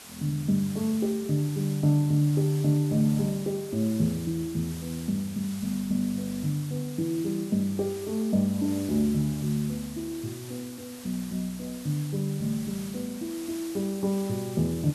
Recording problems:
background hiss; slope -1 dB per octave, SNR 15 dB

